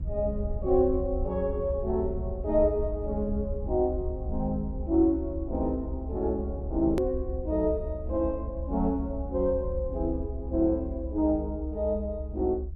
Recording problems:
low-frequency rumble; below 70 Hz, SNR 7 dB
edit click; at 7 s

